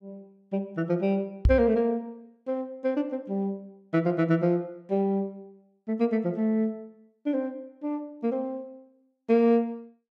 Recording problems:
knock on the microphone; at 1.5 s; peak +8 dB vs average level

